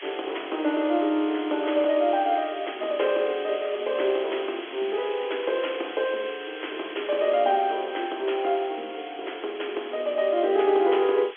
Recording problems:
phone line; 280 Hz to 3.4 kHz, G.711
background hiss; SNR 14 dB

